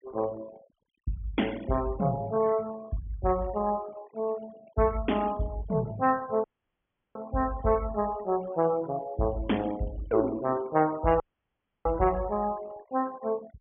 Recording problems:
low-pass filter; nothing above 3.4 kHz
noise reduction artefacts; signal-to-artefact ratio 20 dB
dropout; at 6.5 s for 0.5 s and at 11 s for 0.5 s

